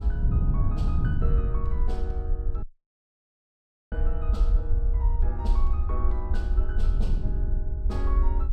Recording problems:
low-frequency rumble; below 58 Hz, SNR -11 dB
wind on the microphone; below 130 Hz, SNR -8 dB
audio cutting out; at 2.5 s for 1.5 s

